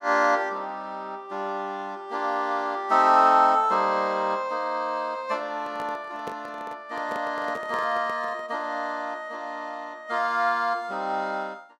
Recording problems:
microphone handling noise; from 5.5 to 8.5 s; peak -7 dB vs average level

